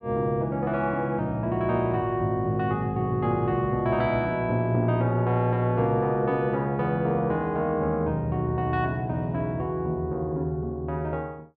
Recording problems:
treble missing; nothing above 5.5 kHz

